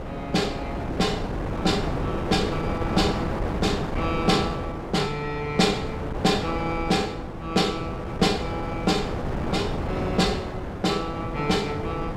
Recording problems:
wind noise; below 620 Hz, SNR 4 dB

